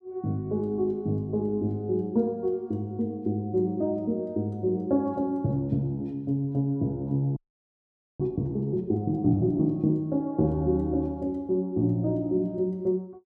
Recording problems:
audio freezing; at 7.5 s for 1 s

